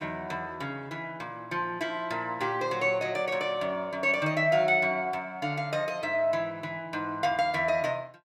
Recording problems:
none

